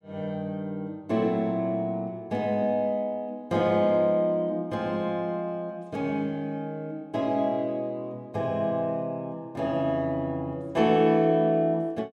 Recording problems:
none

